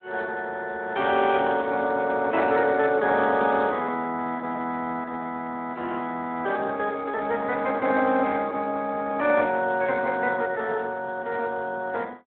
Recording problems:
telephone audio; 260 Hz to 3.7 kHz, Speex

